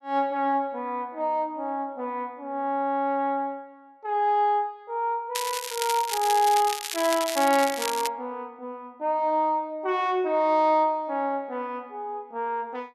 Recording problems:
crackle; from 5.5 to 8 s; loose cable, SNR 6 dB

